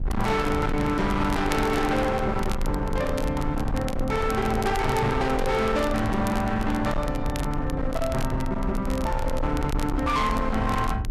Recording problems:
distorted audio; hard clipping, signal-to-distortion ratio 7 dB
rumble; below 180 Hz, SNR 6 dB
crackle; vinyl, SNR 18 dB

